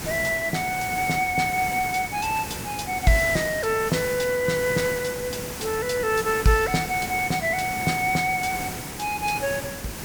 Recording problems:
background hiss; slope -3 dB per octave, SNR 8 dB

